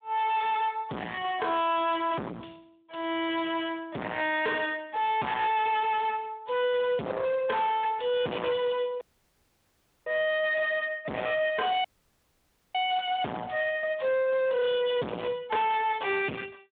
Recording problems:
phone line; 260 Hz to 3.7 kHz, Speex
distortion; hard clipping, uneven, signal-to-distortion ratio 4 dB
audio cutting out; at 9 s for 1 s and at 12 s for 1 s

